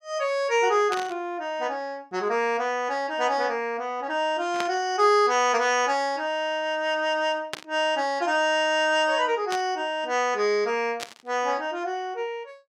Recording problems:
static burst; 5 times, first at 1 s; peak -2 dB vs average level

